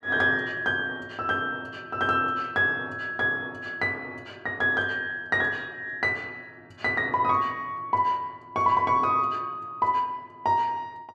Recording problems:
none

